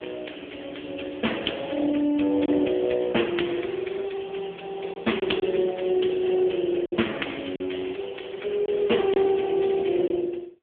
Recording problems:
telephone audio; 240 Hz to 3.4 kHz, AMR-NB
packet loss; 2% of the sound replaced, filled with silence

